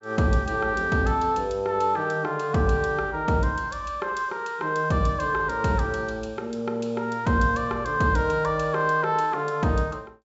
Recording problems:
low-pass filter; nothing above 8 kHz

